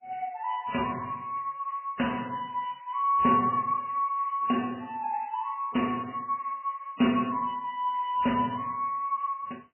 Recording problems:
lossy codec; MP3, log-spectral distance 9 dB, nothing above 2.8 kHz

